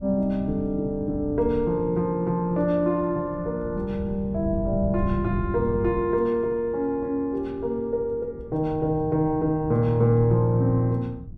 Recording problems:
wind noise; below 140 Hz, SNR 12 dB

